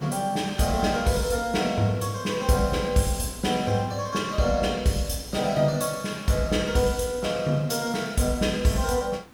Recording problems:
background hiss; slope -6 dB per octave, SNR 24 dB

